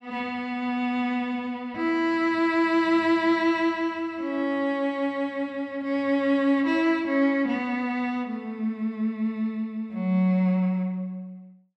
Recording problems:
none

